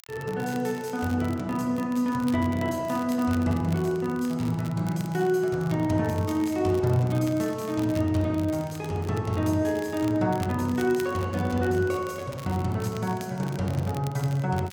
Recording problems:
crackling; vinyl, SNR 21 dB

